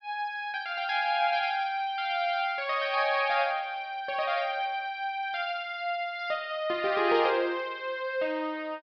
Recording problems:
treble missing; nothing above 5.5 kHz

